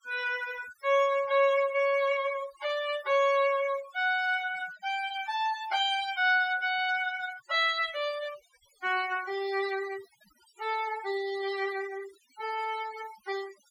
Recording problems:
noise reduction artefacts; signal-to-artefact ratio 17 dB

